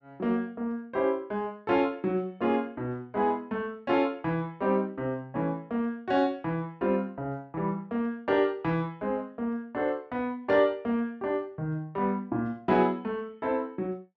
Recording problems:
none

